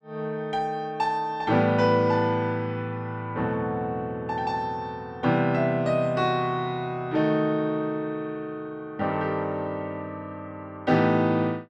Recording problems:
none

